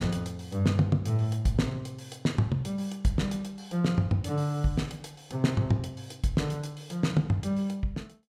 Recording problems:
none

